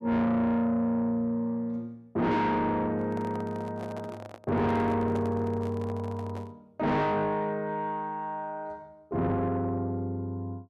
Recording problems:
distorted audio; soft clipping, signal-to-distortion ratio 7 dB
microphone handling noise; from 3 to 6.5 s; peak -5 dB vs average level

